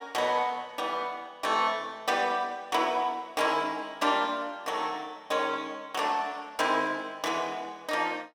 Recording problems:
none

